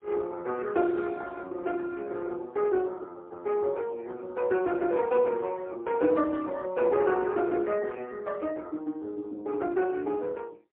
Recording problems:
phone line; 260 Hz to 3.5 kHz, AMR-NB, then MP3

